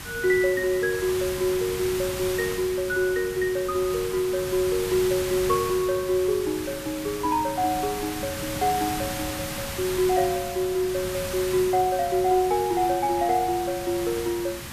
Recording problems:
background hiss; slope -1 dB per octave, SNR 8 dB

